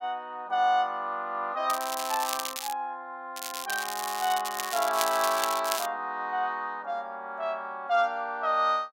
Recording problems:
crackle; from 1.5 to 2.5 s and from 3.5 to 6 s; loose cable, SNR 5 dB

